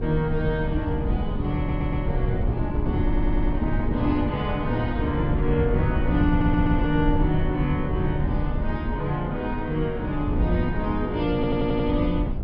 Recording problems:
treble cut off; nothing above 5.5 kHz
wind noise; below 130 Hz, SNR 2 dB
stutter; 4 times, first at 1.5 s

